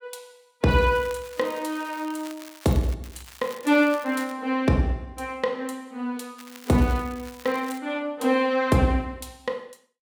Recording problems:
crackle; from 0.5 to 3 s, from 3 to 4.5 s and from 6.5 to 8 s; loose cable, SNR 20 dB

